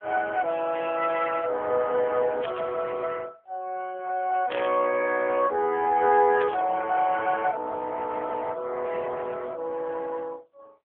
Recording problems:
telephone audio; 300 Hz to 2.9 kHz, AMR-NB
burst of static; at 2.5 s, at 4.5 s and at 6.5 s; peak -5 dB vs average level

